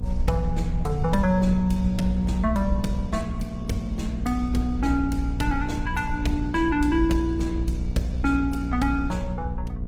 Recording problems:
lossy compression; Opus, log-spectral distance 2 dB, nothing above 19 kHz
electrical hum; 60 Hz, harmonics up to 720 Hz, SNR 7 dB
low-frequency rumble; below 70 Hz, SNR 5 dB

